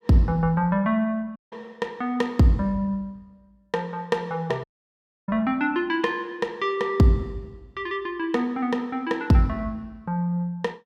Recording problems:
dropout; at 1.5 s and at 4.5 s for 0.5 s

